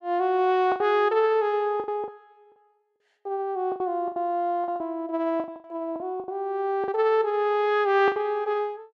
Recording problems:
lost packets; 11% of the sound replaced, filled with the last packet

